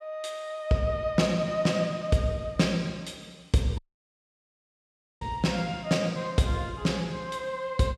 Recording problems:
audio cutting out; at 4 s for 1.5 s

